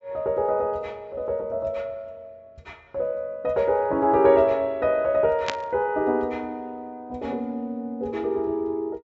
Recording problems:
low-pass filter; nothing above 8 kHz
static burst; at 5.5 s; peak +2 dB vs average level

